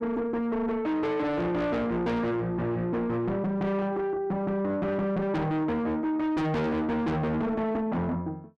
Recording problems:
distortion; soft clipping, signal-to-distortion ratio 6 dB

